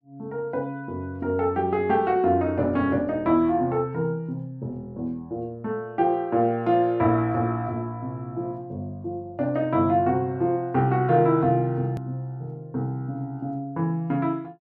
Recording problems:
hard cut with a click; at 12 s

